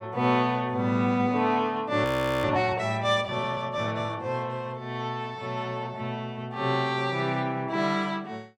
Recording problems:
frozen audio; at 2 s

